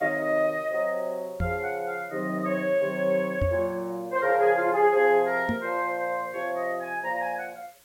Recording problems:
background hiss; slope 0 dB per octave, SNR 28 dB
knock on the microphone; at 1.5 s, at 3.5 s and at 5.5 s; peak +1 dB vs average level

